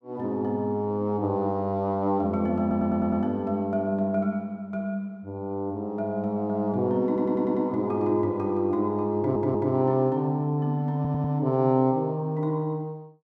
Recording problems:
stutter; 4 times, first at 2.5 s

